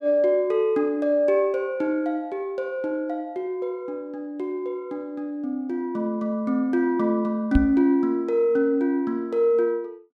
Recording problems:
knock on the microphone; at 7.5 s; peak +5 dB vs average level

